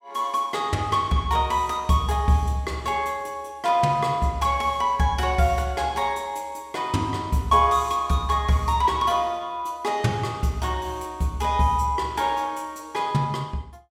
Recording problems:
none

